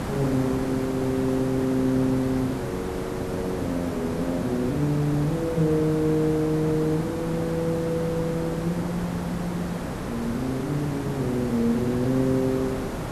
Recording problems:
background hiss; slope -7 dB per octave, SNR 5 dB

